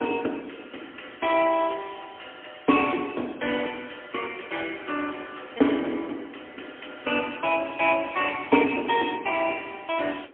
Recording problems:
telephone audio; 220 Hz to 3.4 kHz, AMR-NB, then MP3
wind on the microphone; below 750 Hz, SNR 22 dB

